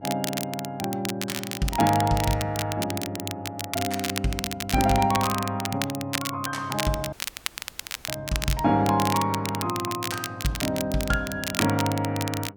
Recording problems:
electrical hum; 50 Hz, harmonics up to 1 kHz, SNR 23 dB
crackle; vinyl, SNR 6 dB
audio cutting out; at 7 s for 1 s

